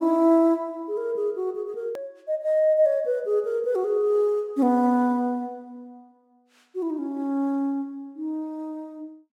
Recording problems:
hard cut with a click; at 2 s

